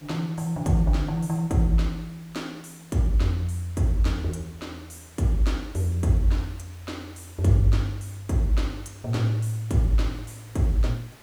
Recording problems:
background hiss; slope -3 dB per octave, SNR 25 dB

